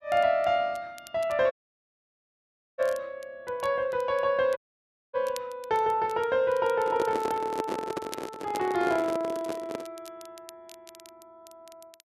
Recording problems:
crackle; vinyl, SNR 23 dB
audio cutting out; at 1.5 s for 1.5 s and at 4.5 s for 0.5 s
microphone handling noise; from 7 to 10 s; peak 0 dB vs average level

